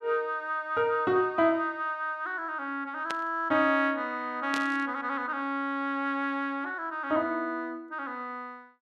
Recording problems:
burst of static; at 3 s and at 4.5 s; peak -2 dB vs average level

